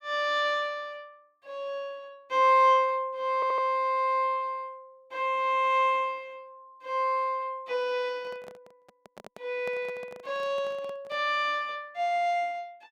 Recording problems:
stutter; at 3.5 s
microphone handling noise; from 8 to 11 s; peak -11 dB vs average level

